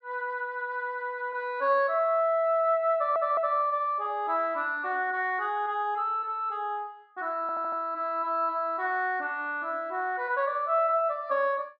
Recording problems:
audio stuttering; at 3 s and at 7.5 s

